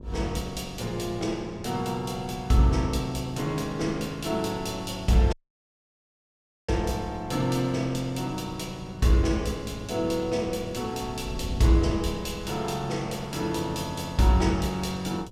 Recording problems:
hum; 50 Hz, harmonics up to 1.1 kHz, SNR 21 dB
wind on the microphone; below 130 Hz, SNR 16 dB
dropout; at 5.5 s for 1.5 s

